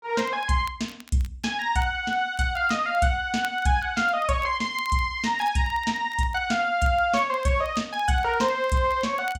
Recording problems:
crackling; vinyl, SNR 26 dB

